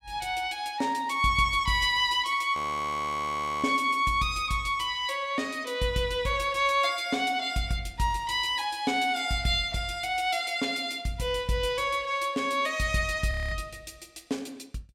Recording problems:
frozen audio; at 2.5 s for 1 s and at 13 s

